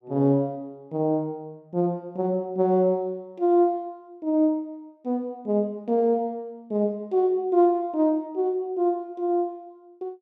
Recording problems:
none

